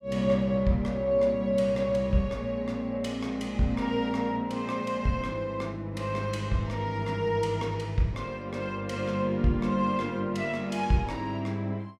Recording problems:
none

